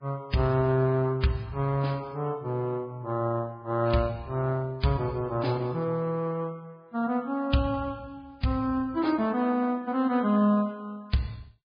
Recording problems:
lossy codec; MP3, then Vorbis, log-spectral distance 2 dB

